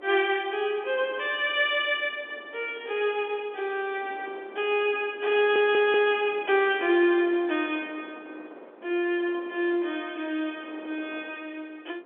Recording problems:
phone line; 240 Hz to 3.5 kHz, G.711
wind on the microphone; below 770 Hz, SNR 21 dB
audio stuttering; at 5.5 s

